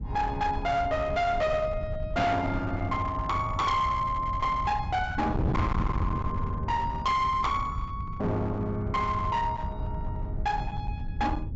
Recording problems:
treble missing; nothing above 8 kHz
distorted audio; hard clipping, uneven, signal-to-distortion ratio 7 dB
wind on the microphone; below 170 Hz, SNR 6 dB

